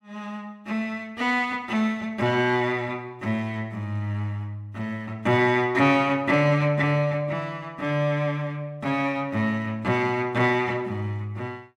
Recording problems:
none

